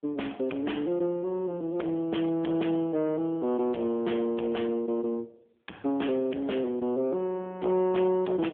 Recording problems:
phone line; 220 Hz to 3.4 kHz, AMR-NB
distortion; soft clipping, signal-to-distortion ratio 12 dB

